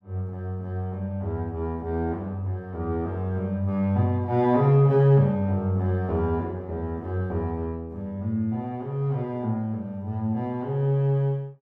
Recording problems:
none

